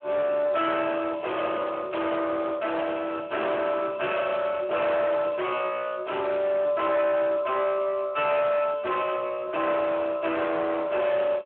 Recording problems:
phone line; 370 Hz to 3.1 kHz, Speex
distortion; hard clipping, signal-to-distortion ratio 8 dB

